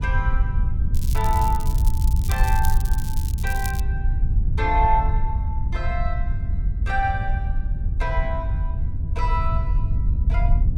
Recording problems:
wind noise; below 76 Hz, SNR -4 dB
crackling; from 1 to 4 s; loose cable, SNR 10 dB

